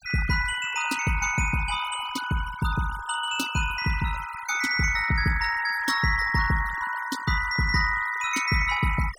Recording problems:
noise reduction artefacts; signal-to-artefact ratio 11 dB

